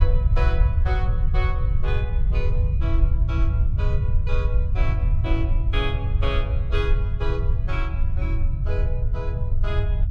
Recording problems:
rumble; below 82 Hz, SNR -9 dB

